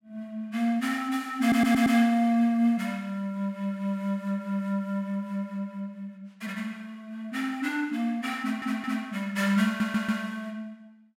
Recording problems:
audio stuttering; at 1.5 s, at 8.5 s and at 9.5 s

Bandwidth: 16 kHz